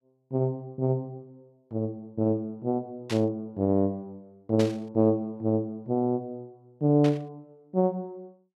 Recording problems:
burst of static; at 3 s, at 4.5 s and at 7 s; peak -4 dB vs average level

